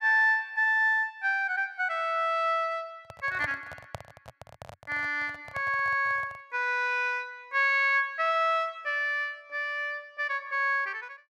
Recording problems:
handling noise; from 3 to 6.5 s; peak -6 dB vs average level

